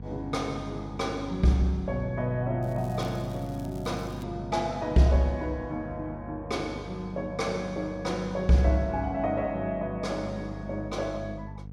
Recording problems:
hum; 50 Hz, harmonics up to 500 Hz, SNR 12 dB
crackling; from 2.5 to 4 s; loose cable, SNR 25 dB

